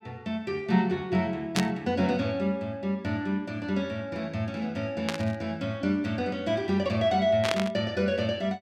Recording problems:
static burst; at 1.5 s, at 5 s and at 7.5 s; peak +4 dB vs average level

